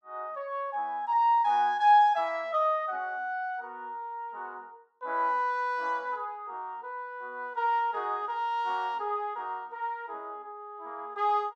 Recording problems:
none

